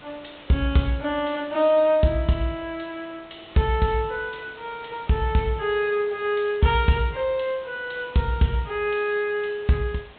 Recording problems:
treble cut off; nothing above 4 kHz
background hiss; SNR 23 dB

